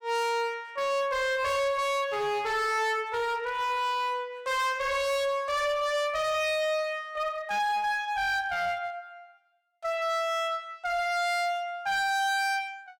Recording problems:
distortion; hard clipping, uneven, signal-to-distortion ratio 6 dB

